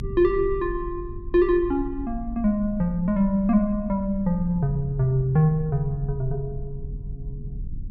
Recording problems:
rumble; below 70 Hz, SNR 13 dB

